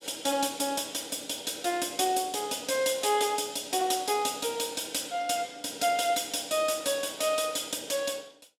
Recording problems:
none

